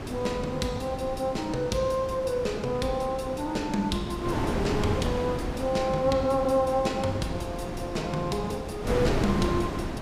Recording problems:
wind noise; below 630 Hz, SNR 4 dB

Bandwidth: 15.5 kHz